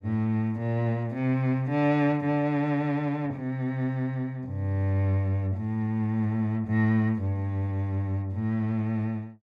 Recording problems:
none

